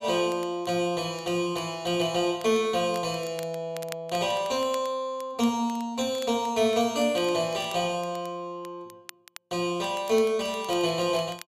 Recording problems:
crackle; vinyl, SNR 21 dB

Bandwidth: 14.5 kHz